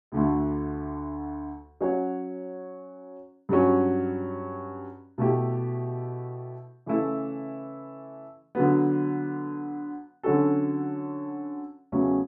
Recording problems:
none

